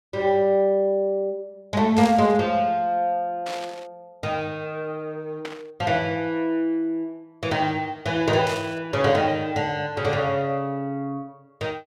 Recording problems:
burst of static; 4 times, first at 2 s; peak -5 dB vs average level

